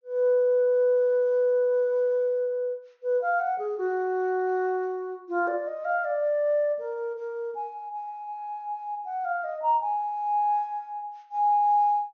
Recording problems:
treble cut off; nothing above 6.6 kHz

